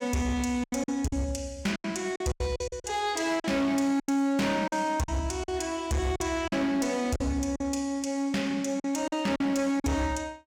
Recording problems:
distortion; hard clipping, signal-to-distortion ratio 12 dB
packet loss; 10% of the sound replaced, filled with silence

